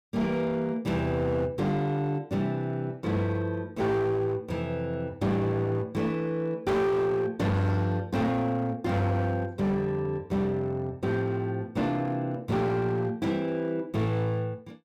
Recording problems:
distortion; hard clipping, signal-to-distortion ratio 10 dB

